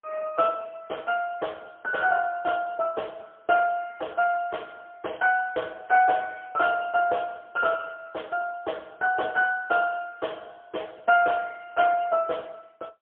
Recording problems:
phone line; 340 Hz to 2.1 kHz, AMR-NB, then MP3

